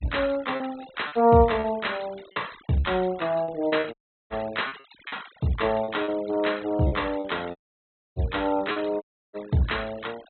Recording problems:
treble missing; nothing above 4.1 kHz
denoising artefacts; signal-to-artefact ratio 20 dB
packet loss; 8% of the sound replaced, filled with repeated pitch periods
audio cutting out; at 4 s, at 7.5 s for 0.5 s and at 9 s

